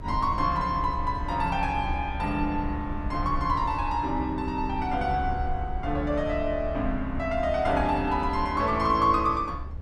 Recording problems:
rumble; below 72 Hz, SNR 9 dB

